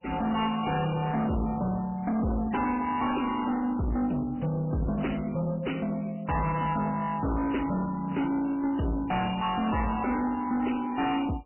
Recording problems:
codec artefacts; MP3, log-spectral distance 4 dB, nothing above 2.8 kHz
distortion; soft clipping, signal-to-distortion ratio 6 dB

